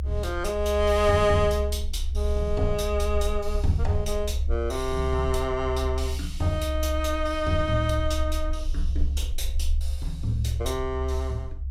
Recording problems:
rumble; below 70 Hz, SNR 3 dB

